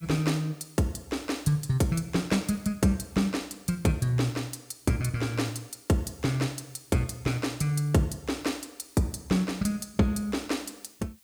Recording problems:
background hiss; slope +2 dB per octave, SNR 28 dB

